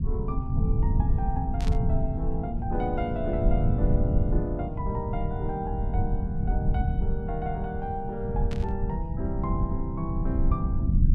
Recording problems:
rumble; below 110 Hz, SNR -4 dB
static burst; at 1.5 s and at 8.5 s; peak -4 dB vs average level

